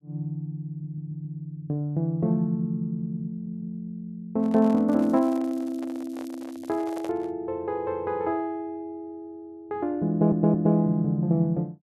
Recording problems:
stutter; at 0.5 s, at 3.5 s and at 10 s
handling noise; from 4.5 to 7.5 s; peak -7 dB vs average level
crackling; from 5 to 7 s; loose cable, SNR 29 dB

